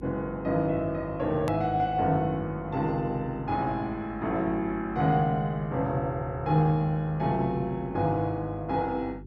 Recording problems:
hum; 50 Hz, harmonics up to 400 Hz, SNR 17 dB
click at an edit; at 1.5 s

